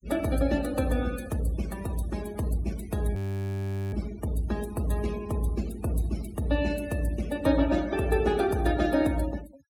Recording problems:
noise reduction artefacts; signal-to-artefact ratio 16 dB
frozen audio; at 3 s for 1 s

